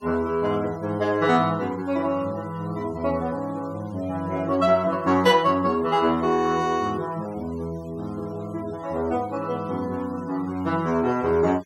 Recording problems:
denoising artefacts; signal-to-artefact ratio 25 dB

